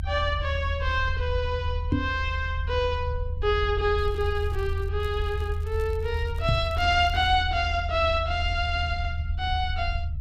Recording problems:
rumble; below 80 Hz, strongest tone 78 Hz, SNR 4 dB
microphone bump; at 2 s and at 6.5 s; peak +6 dB vs average level
crackling; at 4 s and from 5 to 7.5 s; loose cable, SNR 27 dB

